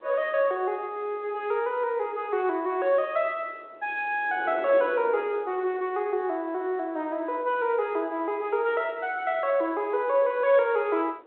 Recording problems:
phone line; 280 Hz to 3.7 kHz, G.726
wind noise; below 650 Hz, SNR 20 dB

